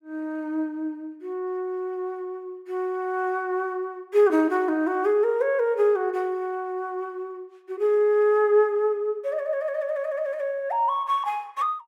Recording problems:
none

